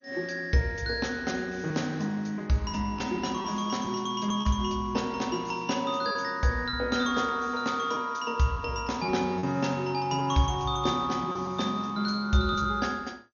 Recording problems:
lossy codec; MP2, then MP3, log-spectral distance 4 dB, nothing above 6.5 kHz
lost packets; 3% of the sound replaced, filled with repeated pitch periods

